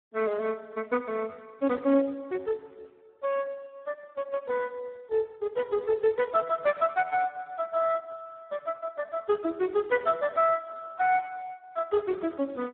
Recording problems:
phone line; 240 Hz to 2.6 kHz, Speex

